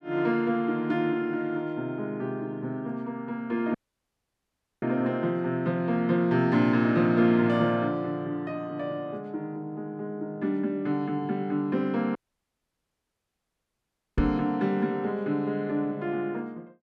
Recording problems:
dropout; at 4 s for 1 s and at 12 s for 2 s
knock on the microphone; at 14 s; peak +4 dB vs average level

